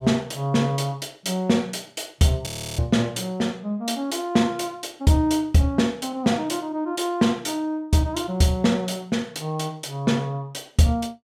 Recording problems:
frozen audio; at 2.5 s

